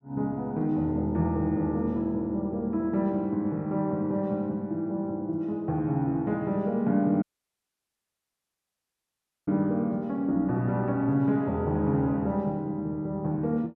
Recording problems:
audio cutting out; at 7 s for 2.5 s

